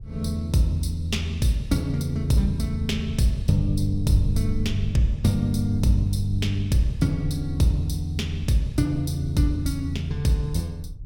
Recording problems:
rumble; below 84 Hz, SNR 11 dB

